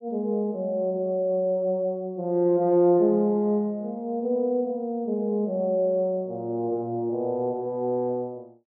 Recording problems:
low-pass filter; nothing above 8 kHz

